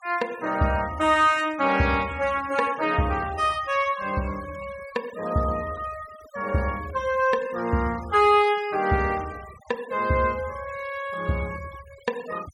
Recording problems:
denoising artefacts; signal-to-artefact ratio 21 dB

